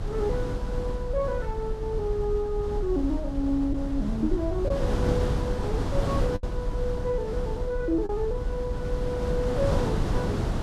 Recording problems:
low-frequency rumble; below 58 Hz, SNR 4 dB
wind noise; below 460 Hz, SNR 3 dB
lost packets; 1.2% of the sound replaced, filled with the last packet

